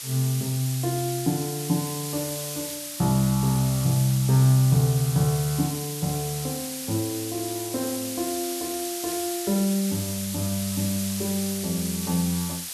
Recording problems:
background hiss; slope +3 dB per octave, SNR 6 dB

